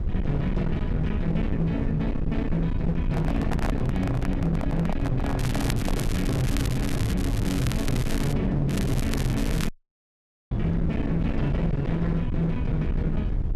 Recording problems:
distortion; hard clipping, signal-to-distortion ratio 8 dB
low-frequency rumble; below 140 Hz, SNR 3 dB
microphone handling noise; from 3 to 6 s; peak +1 dB vs average level
crackle; from 5.5 to 8.5 s and from 8.5 to 9.5 s; loose cable, SNR 10 dB
dropout; at 9.5 s for 1 s

